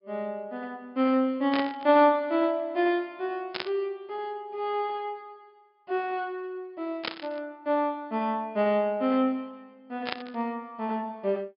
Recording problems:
low-pass filter; nothing above 5.5 kHz
burst of static; 4 times, first at 1.5 s; peak +1 dB vs average level

